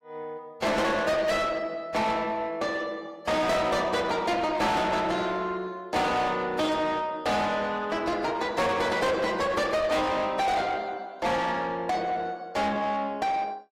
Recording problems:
lossy compression; AAC, log-spectral distance 2 dB, nothing above 15.5 kHz
distorted audio; soft clipping, signal-to-distortion ratio 7 dB

